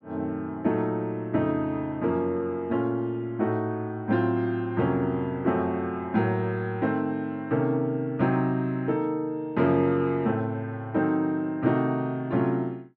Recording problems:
none

